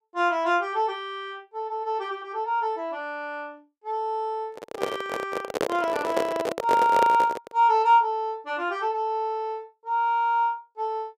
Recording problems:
handling noise; from 4.5 to 7.5 s; peak +3 dB vs average level

